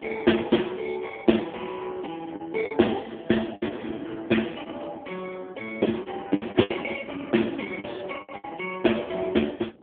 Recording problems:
telephone audio; 240 Hz to 3.5 kHz, AMR-NB
wind noise; below 380 Hz, SNR 18 dB
lost packets; 8% of the sound replaced, filled with the last packet

